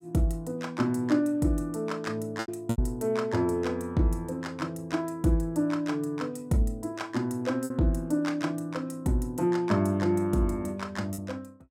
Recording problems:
lost packets; 2% of the sound replaced, filled with repeated pitch periods

